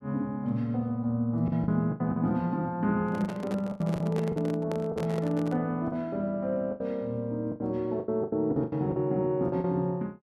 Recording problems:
packet loss; 10% of the sound replaced, filled with the last packet
handling noise; from 3 to 5.5 s; peak -4 dB vs average level

